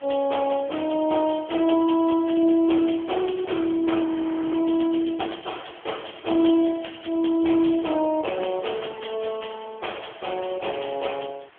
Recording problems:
telephone audio; 240 Hz to 3.4 kHz, AMR-NB
hiss; SNR 27 dB
frozen audio; at 4 s

